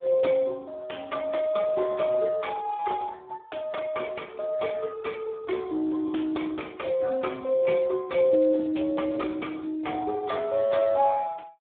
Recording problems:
telephone audio; 260 Hz to 2.1 kHz, Speex

